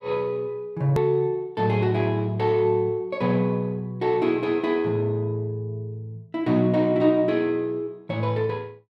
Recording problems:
click at an edit; at 1 s

